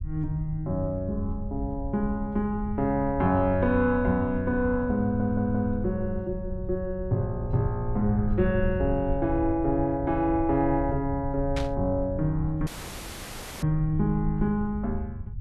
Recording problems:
rumble; below 92 Hz, SNR 9 dB
audio stuttering; at 5 s
burst of static; at 12 s; peak -4 dB vs average level
audio cutting out; at 13 s for 1 s

